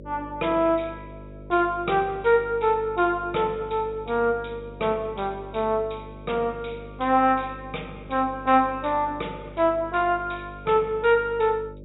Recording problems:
treble missing; nothing above 4 kHz
electrical hum; 50 Hz, harmonics up to 600 Hz, SNR 18 dB

